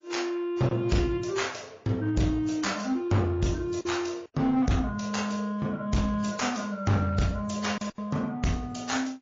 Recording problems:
lossy codec; MP3, then AAC, log-spectral distance 4 dB
distortion; hard clipping, uneven, signal-to-distortion ratio 10 dB
packet loss; 2% of the sound replaced, filled with silence

